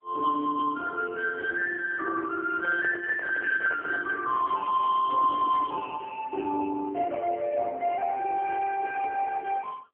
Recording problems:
telephone audio; 260 Hz to 2.3 kHz, AMR-NB
microphone handling noise; from 2.5 to 4 s; peak -8 dB vs average level

